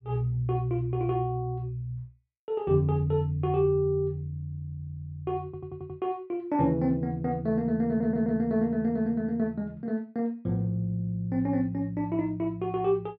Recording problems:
stutter; at 5.5 s and at 8 s

